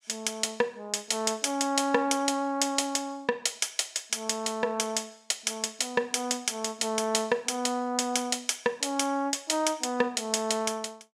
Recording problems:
none

